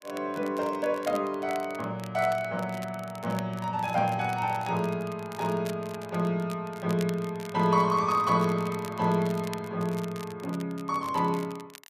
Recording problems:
crackling; vinyl, SNR 19 dB

